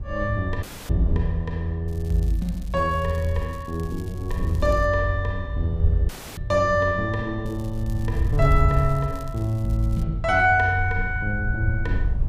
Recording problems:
rumble; below 86 Hz, SNR 7 dB
dropout; at 0.5 s and at 6 s
crackle; from 2 to 5 s and from 7.5 to 10 s; loose cable, SNR 26 dB

